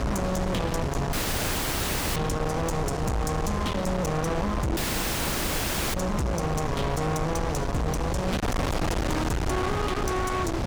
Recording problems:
distortion; soft clipping, signal-to-distortion ratio 6 dB
low-frequency rumble; below 320 Hz, SNR 7 dB
wind on the microphone; below 860 Hz, SNR 2 dB
audio cutting out; at 1 s for 1 s and at 5 s for 1 s

